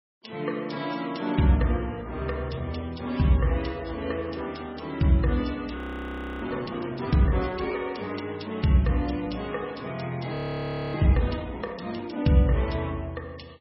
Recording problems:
lossy codec; MP3, log-spectral distance 5 dB, nothing above 5.5 kHz
audio freezing; at 6 s for 0.5 s and at 10 s for 0.5 s

